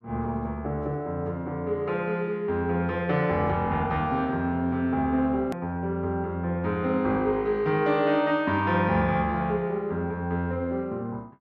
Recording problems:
hard cut with a click; at 5.5 s

